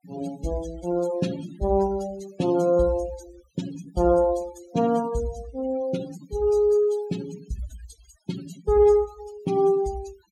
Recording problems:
denoising artefacts; signal-to-artefact ratio 19 dB

